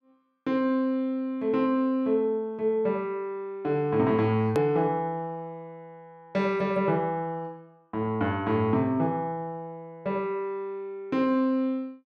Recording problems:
click at an edit; at 4.5 s

